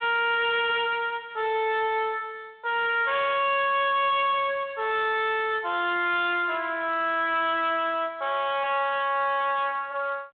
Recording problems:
phone line; 300 Hz to 3.8 kHz, G.726
distorted audio; hard clipping, signal-to-distortion ratio 6 dB

